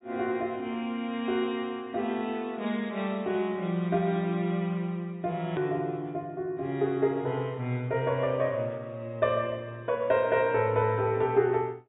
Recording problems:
low-pass filter; nothing above 4 kHz
edit click; at 5.5 s

